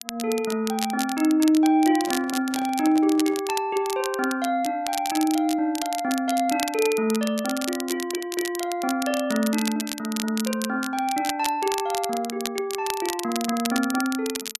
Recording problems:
crackle; vinyl, SNR 9 dB
microphone handling noise; from 2 to 3.5 s; peak -10 dB vs average level

